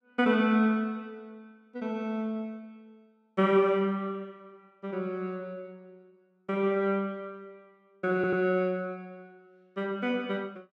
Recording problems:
stutter; at 8 s

